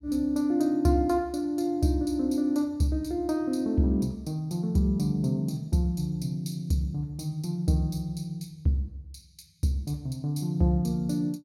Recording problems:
none

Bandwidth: 16 kHz